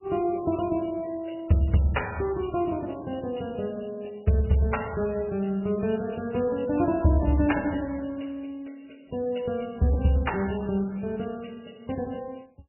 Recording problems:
lossy compression; MP3, log-spectral distance 5 dB, nothing above 2.9 kHz

